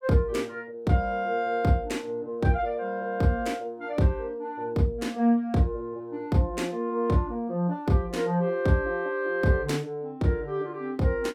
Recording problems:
none

